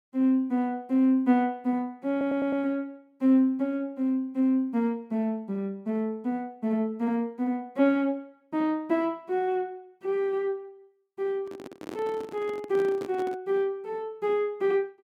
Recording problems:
audio stuttering; at 2 s
microphone handling noise; from 11 to 13 s; peak -7 dB vs average level

